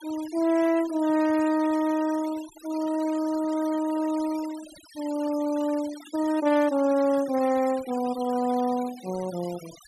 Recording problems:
noise reduction artefacts; signal-to-artefact ratio 18 dB

